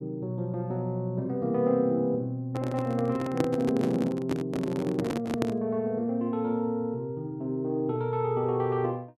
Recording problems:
handling noise; from 2.5 to 5.5 s; peak +4 dB vs average level

